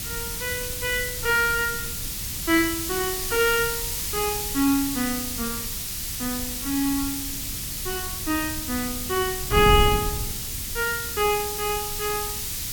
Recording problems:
hiss; slope +4 dB per octave, SNR 3 dB
wind on the microphone; below 140 Hz, SNR 10 dB

